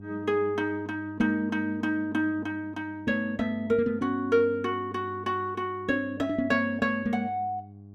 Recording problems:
hum; 50 Hz, harmonics up to 400 Hz, SNR 17 dB

